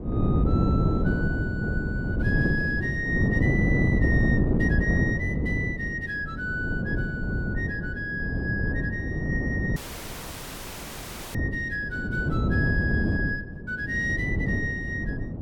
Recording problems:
wind noise; below 260 Hz, SNR -4 dB
audio cutting out; at 10 s for 1.5 s

